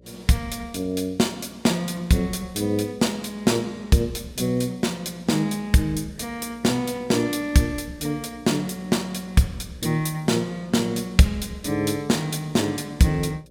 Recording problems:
electrical hum; 60 Hz, harmonics up to 600 Hz, SNR 27 dB

